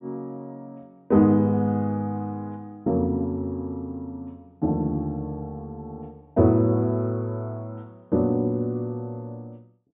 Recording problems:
treble cut off; nothing above 4 kHz

